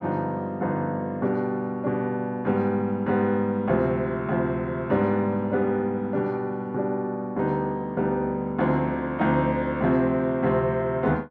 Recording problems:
none

